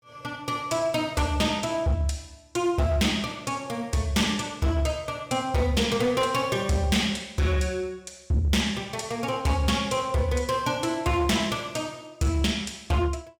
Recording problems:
distortion; hard clipping, signal-to-distortion ratio 11 dB

